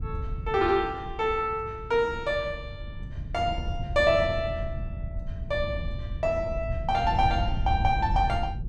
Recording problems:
wind on the microphone; below 110 Hz, SNR 7 dB

